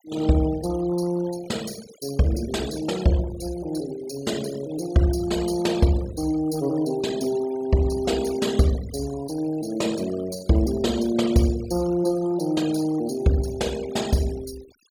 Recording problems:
noise reduction artefacts; signal-to-artefact ratio 16 dB

